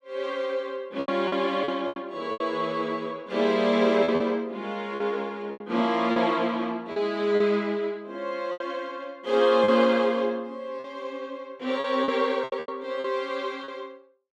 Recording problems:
lost packets; 8% of the sound replaced, filled with repeated pitch periods

